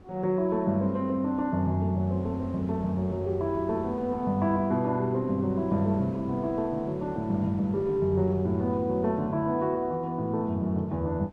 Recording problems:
wind noise; below 460 Hz, SNR 20 dB

